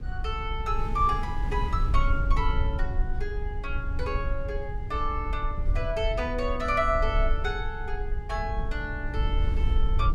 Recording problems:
low-frequency rumble; below 60 Hz, SNR 0 dB
wind noise; below 150 Hz, SNR 13 dB

